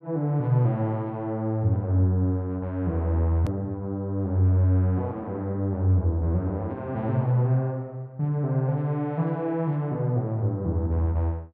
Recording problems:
hard cut with a click; at 3.5 s

